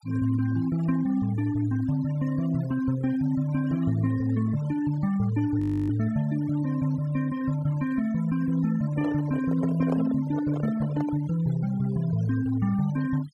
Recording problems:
noise reduction artefacts; signal-to-artefact ratio 17 dB
frozen audio; at 5.5 s
microphone handling noise; from 9 to 11 s; peak -3 dB vs average level

